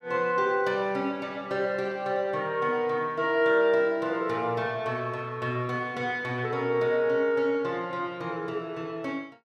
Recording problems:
none

